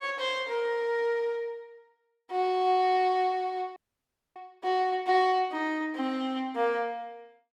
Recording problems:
frozen audio; at 4 s for 0.5 s

